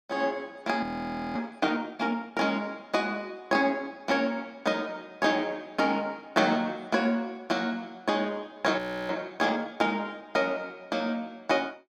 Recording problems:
audio freezing; at 1 s for 0.5 s and at 9 s

